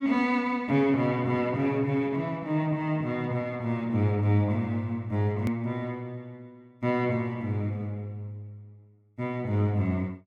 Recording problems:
edit click; at 5.5 s

